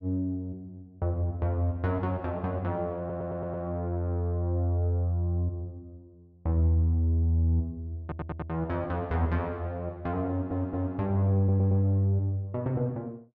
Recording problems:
stutter; 4 times, first at 3 s

